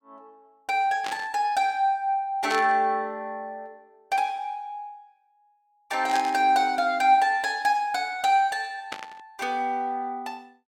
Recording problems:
burst of static; 4 times, first at 1 s; peak -4 dB vs average level

